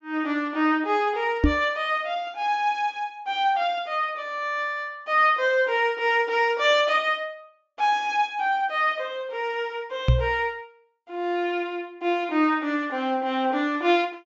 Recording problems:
low-pass filter; nothing above 7.5 kHz
microphone thump; at 1.5 s and at 10 s; peak +8 dB vs average level

